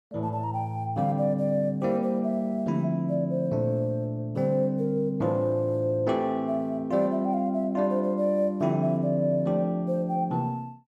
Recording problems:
none

